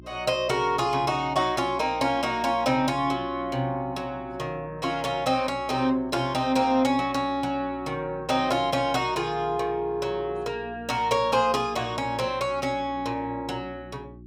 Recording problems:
hum; 60 Hz, harmonics up to 360 Hz, SNR 20 dB

